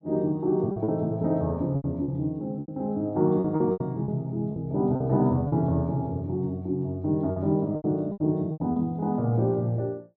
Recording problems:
lost packets; 9% of the sound replaced, filled with repeated pitch periods

